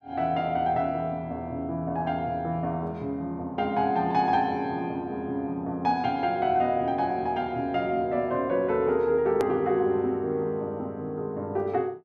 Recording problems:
edit click; at 9.5 s

